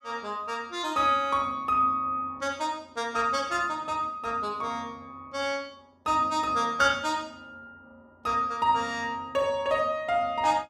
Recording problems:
none

